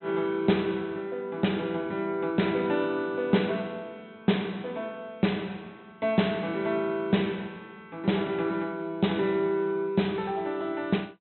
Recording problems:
treble missing; nothing above 4 kHz

